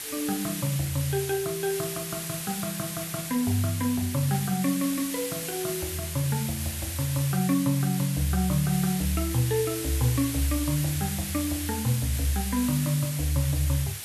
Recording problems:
hiss; SNR 6 dB

